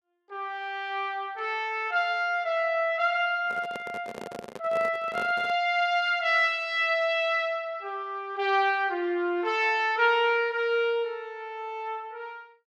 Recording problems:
microphone handling noise; from 3.5 to 5.5 s; peak -6 dB vs average level

